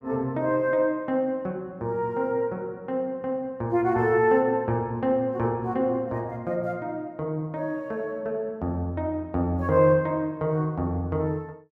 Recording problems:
none

